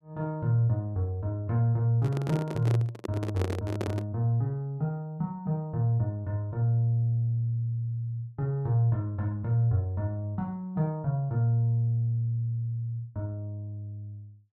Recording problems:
handling noise; from 2 to 4 s; peak -1 dB vs average level

